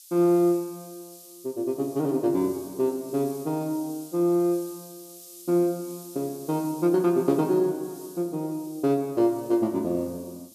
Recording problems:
background hiss; SNR 20 dB

